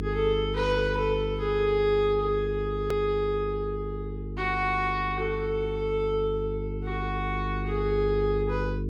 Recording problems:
hum; 50 Hz, harmonics up to 450 Hz, SNR 6 dB
edit click; at 3 s

